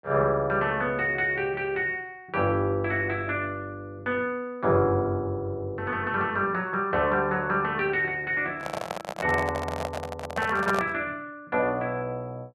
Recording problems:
handling noise; from 8.5 to 11 s; peak +1 dB vs average level

